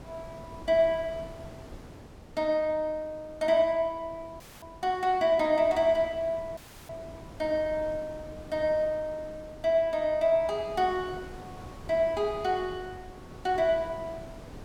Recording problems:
wind noise; below 570 Hz, SNR 19 dB
audio cutting out; at 4.5 s and at 6.5 s

